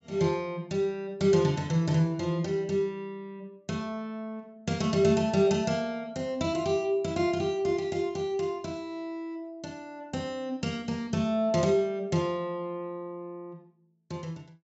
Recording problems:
low-pass filter; nothing above 8 kHz

